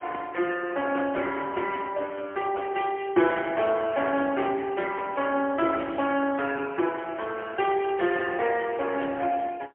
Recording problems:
telephone audio; 280 Hz to 3.2 kHz, AMR-NB, then MP3

